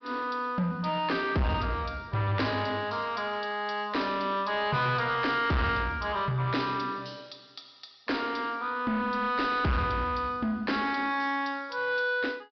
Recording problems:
low-pass filter; nothing above 5.5 kHz
distortion; soft clipping, signal-to-distortion ratio 8 dB

